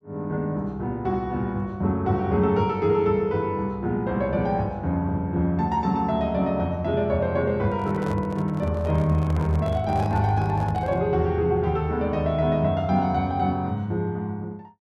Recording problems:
microphone handling noise; from 7.5 to 11 s; peak -8 dB vs average level

